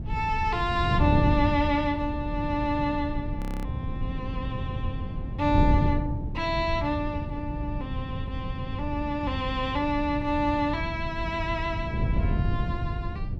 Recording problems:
wind on the microphone; below 150 Hz, SNR 2 dB
audio freezing; at 3.5 s

